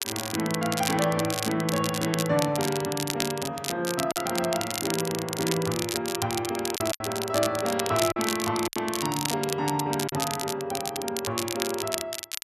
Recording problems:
crackle; vinyl, SNR 4 dB
packet loss; 3% of the sound replaced, filled with silence

